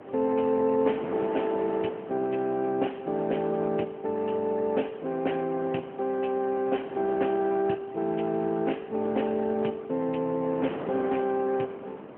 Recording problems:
phone line; 190 Hz to 3.2 kHz, AMR-NB
wind on the microphone; below 840 Hz, SNR 14 dB

